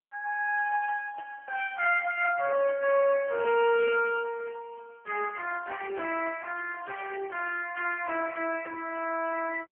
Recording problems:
phone line; 220 Hz to 3 kHz, AMR-NB

